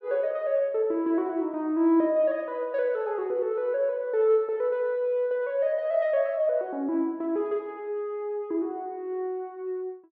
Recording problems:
none

